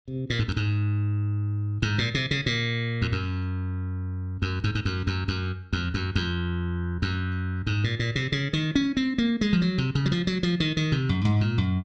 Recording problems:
none

